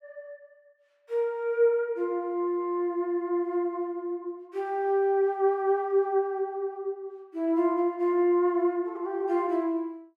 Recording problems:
none

